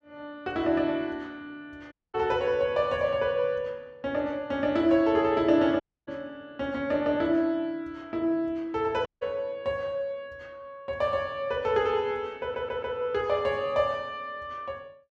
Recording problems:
audio cutting out; at 2 s, at 6 s and at 9 s
stutter; at 12 s

